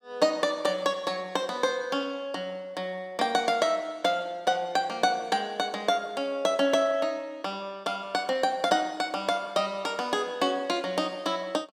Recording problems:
none

